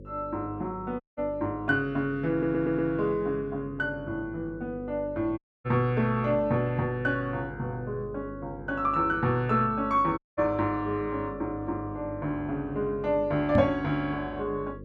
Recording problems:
hum; 50 Hz, harmonics up to 550 Hz, SNR 15 dB
audio cutting out; at 1 s, at 5.5 s and at 10 s
audio stuttering; at 2.5 s
microphone thump; at 14 s; peak +7 dB vs average level

